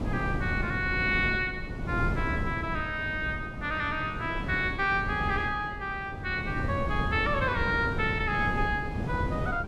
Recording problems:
wind noise; below 270 Hz, SNR 5 dB

